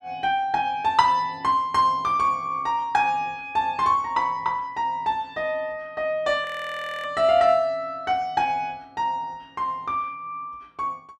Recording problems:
audio freezing; at 6.5 s for 0.5 s

